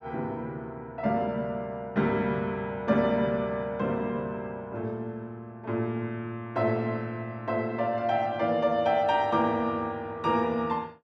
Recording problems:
none

